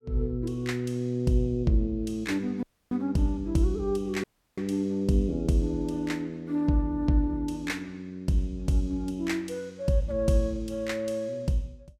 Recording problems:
dropout; at 2.5 s and at 4 s

